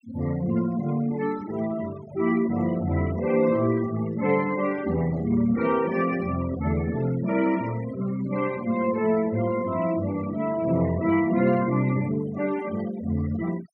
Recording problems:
noise reduction artefacts; signal-to-artefact ratio 17 dB

